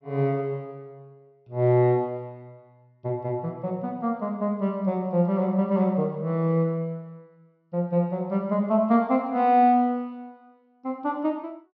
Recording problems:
treble cut off; nothing above 6 kHz

